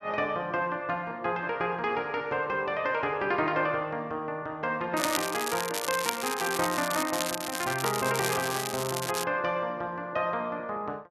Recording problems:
crackle; from 5 to 9 s; loose cable, SNR 4 dB

